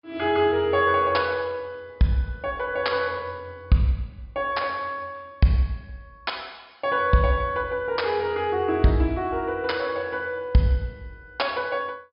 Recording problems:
treble cut off; nothing above 5.5 kHz

